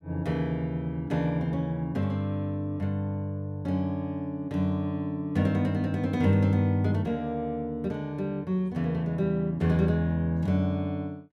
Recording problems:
none

